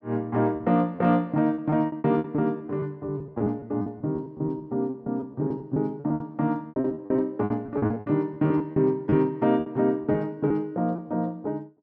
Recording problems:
packet loss; 15% of the sound replaced, filled with repeated pitch periods

